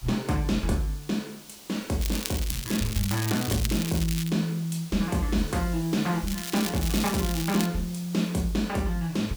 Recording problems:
background hiss; SNR 16 dB
crackle; from 2 to 4.5 s and from 6.5 to 7.5 s; loose cable, SNR 6 dB

